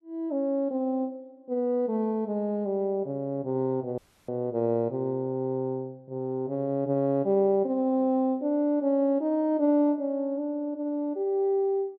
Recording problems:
dropout; at 4 s

